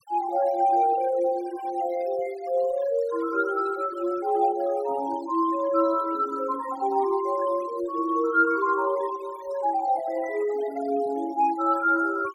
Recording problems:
denoising artefacts; signal-to-artefact ratio 19 dB

